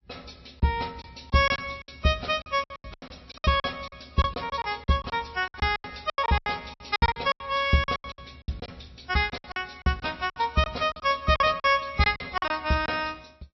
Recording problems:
lossy compression; MP3, then AAC, log-spectral distance 7 dB, nothing above 5.7 kHz
lost packets; 17% of the sound replaced, filled with silence

